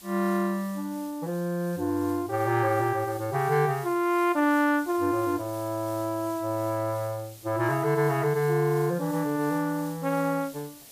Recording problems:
hiss; SNR 19 dB

